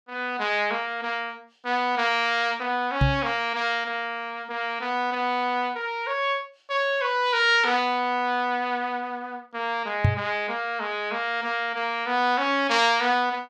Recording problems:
microphone bump; at 3 s and at 10 s; peak +7 dB vs average level

